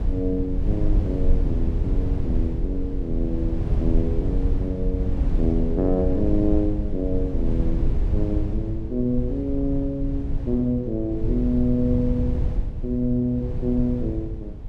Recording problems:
rumble; below 84 Hz, SNR 1 dB

